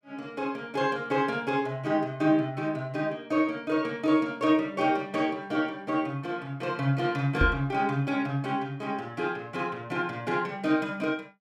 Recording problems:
knock on the microphone; at 7.5 s; peak +6 dB vs average level

